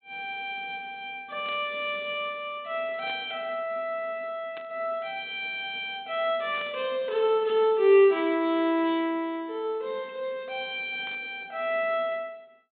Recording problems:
low-pass filter; nothing above 4 kHz
burst of static; 5 times, first at 1.5 s; peak -11 dB vs average level

